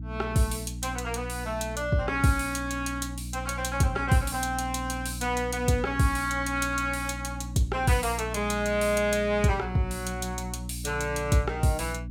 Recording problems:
mains hum; 60 Hz, harmonics up to 300 Hz, SNR 9 dB

